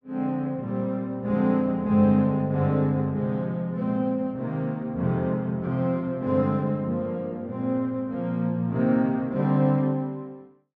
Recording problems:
none

